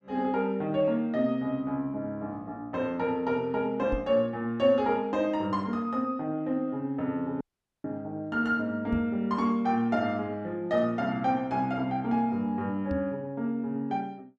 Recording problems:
knock on the microphone; at 4 s, at 9 s and at 13 s; peak -2 dB vs average level
audio cutting out; at 7.5 s

